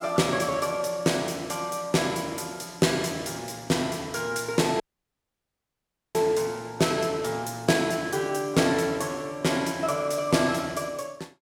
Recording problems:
audio cutting out; at 5 s for 1.5 s

